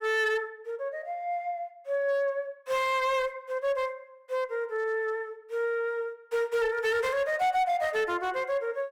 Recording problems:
distorted audio; hard clipping, signal-to-distortion ratio 11 dB

